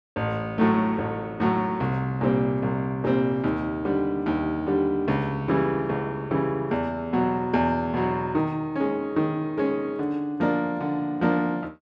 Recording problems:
none

